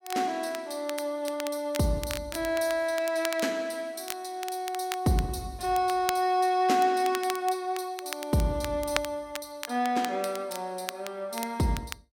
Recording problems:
crackling; vinyl, SNR 11 dB

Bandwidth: 16.5 kHz